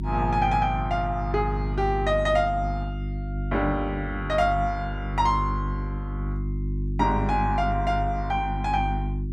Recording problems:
hum; 50 Hz, harmonics up to 350 Hz, SNR 4 dB

